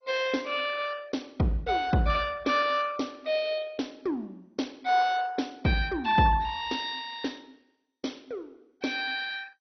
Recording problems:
lossy compression; MP2, log-spectral distance 4 dB, nothing above 5.2 kHz

